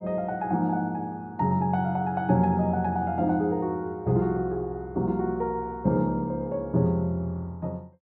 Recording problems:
none

